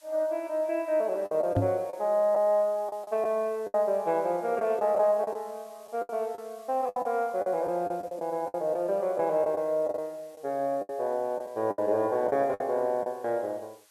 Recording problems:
background hiss; SNR 29 dB
lost packets; 9% of the sound replaced, filled with the last packet
microphone thump; at 1.5 s; peak +5 dB vs average level

